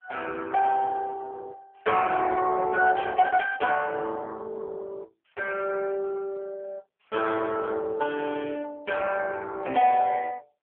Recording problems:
telephone audio; 240 Hz to 3.1 kHz, AMR-NB

